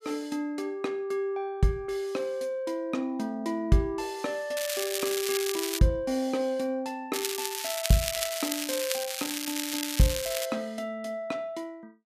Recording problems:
crackle; from 4.5 to 6 s and from 7 to 10 s; loose cable, SNR 2 dB

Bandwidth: 14.5 kHz